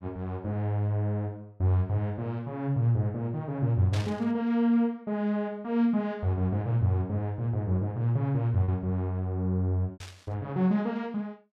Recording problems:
lost packets; 1.1% of the sound replaced, filled with repeated pitch periods
burst of static; at 4 s and at 10 s; peak -7 dB vs average level

